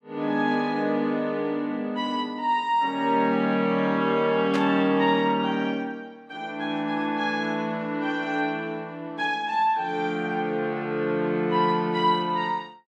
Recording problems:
static burst; at 4.5 s; peak -3 dB vs average level

